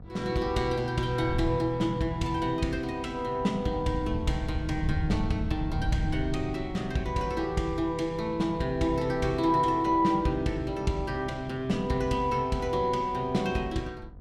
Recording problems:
electrical hum; 50 Hz, harmonics up to 1.3 kHz, SNR 22 dB
wind on the microphone; below 120 Hz, SNR 11 dB

